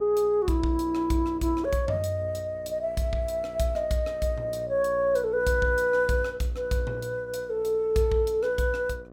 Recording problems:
hum; 60 Hz, harmonics up to 1.3 kHz, SNR 19 dB

